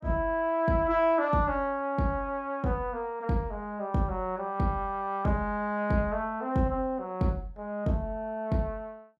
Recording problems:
none

